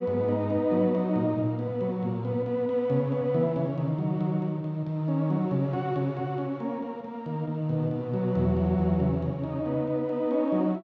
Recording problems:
none

